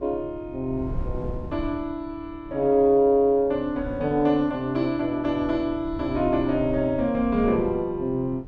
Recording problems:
low-frequency rumble; below 140 Hz, SNR 15 dB

